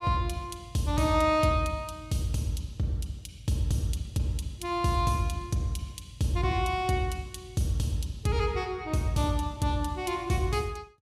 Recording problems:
none

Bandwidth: 15.5 kHz